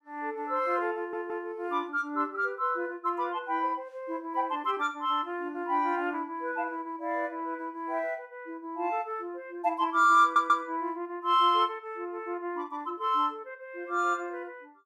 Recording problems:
audio stuttering; at 1 s and at 10 s

